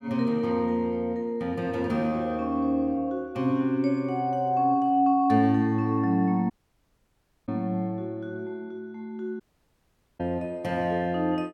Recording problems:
audio cutting out; at 6.5 s for 1 s and at 9.5 s for 1 s

